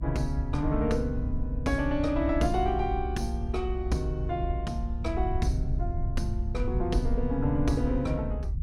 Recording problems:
low-frequency rumble; below 78 Hz, SNR 2 dB

